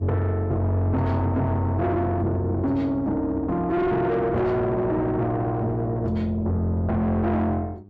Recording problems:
distortion; soft clipping, signal-to-distortion ratio 7 dB
hum; 50 Hz, harmonics up to 800 Hz, SNR 22 dB

